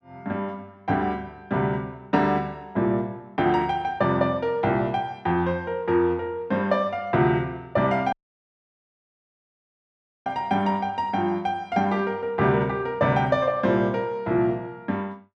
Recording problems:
audio cutting out; at 8 s for 2 s

